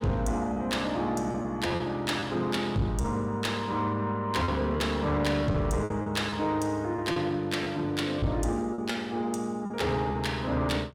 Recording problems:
distorted audio; soft clipping, signal-to-distortion ratio 12 dB
packet loss; 6% of the sound replaced, filled with repeated pitch periods

